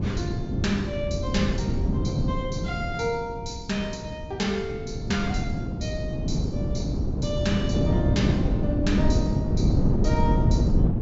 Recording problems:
low-pass filter; nothing above 8 kHz
wind noise; below 220 Hz, SNR -5 dB

